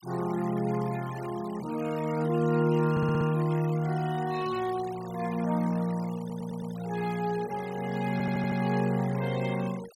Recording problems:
denoising artefacts; signal-to-artefact ratio 17 dB
stutter; at 3 s, at 6 s and at 8 s

